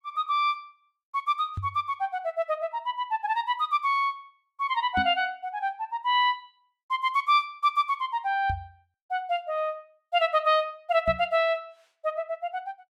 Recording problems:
knock on the microphone; 4 times, first at 1.5 s; peak -2 dB vs average level

